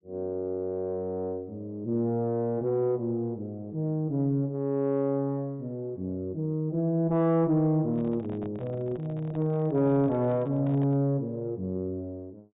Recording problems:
treble cut off; nothing above 4 kHz
distorted audio; soft clipping, signal-to-distortion ratio 11 dB
microphone handling noise; from 8 to 11 s; peak -9 dB vs average level

